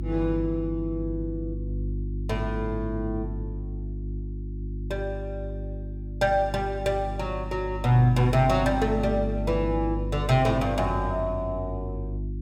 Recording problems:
hum; 50 Hz, harmonics up to 350 Hz, SNR 6 dB

